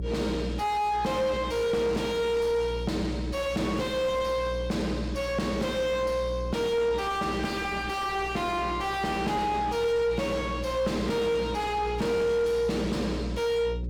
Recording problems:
distorted audio; soft clipping, signal-to-distortion ratio 5 dB
hum; 60 Hz, harmonics up to 540 Hz, SNR 9 dB

